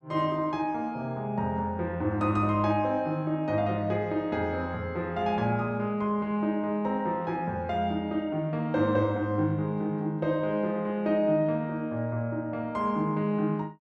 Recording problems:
none

